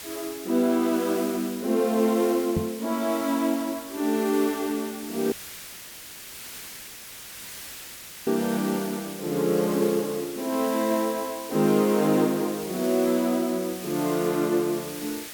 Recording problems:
hiss; slope +1 dB per octave, SNR 12 dB
microphone thump; at 2.5 s; peak +2 dB vs average level
dropout; at 5.5 s for 3 s

